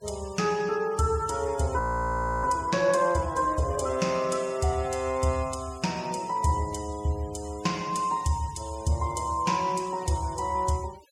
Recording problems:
denoising artefacts; signal-to-artefact ratio 21 dB
frozen audio; at 2 s for 0.5 s

